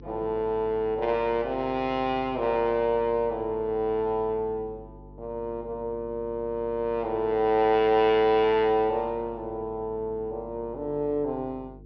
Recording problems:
treble cut off; nothing above 6 kHz
electrical hum; 50 Hz, harmonics up to 450 Hz, SNR 21 dB

